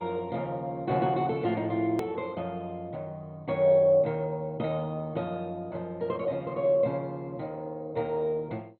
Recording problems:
lossy compression; MP2, then MP2, log-spectral distance 2 dB, nothing above 17.1 kHz
click at an edit; at 2 s

